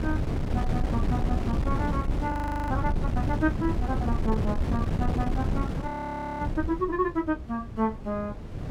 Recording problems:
wind noise; below 200 Hz, SNR -2 dB
audio freezing; at 2.5 s and at 6 s for 0.5 s

